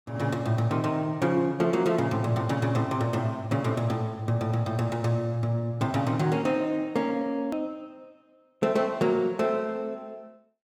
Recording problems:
hard cut with a click; at 7.5 s

